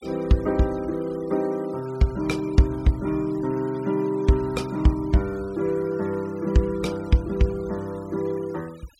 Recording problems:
denoising artefacts; signal-to-artefact ratio 24 dB

